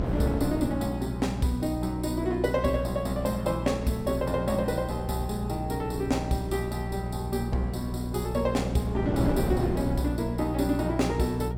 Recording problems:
electrical hum; 60 Hz, harmonics up to 540 Hz, SNR 5 dB
wind on the microphone; below 420 Hz, SNR 8 dB

